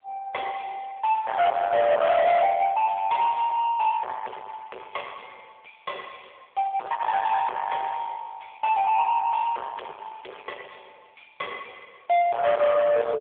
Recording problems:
telephone audio; 710 Hz to 3.9 kHz, AMR-NB
distorted audio; soft clipping, signal-to-distortion ratio 5 dB

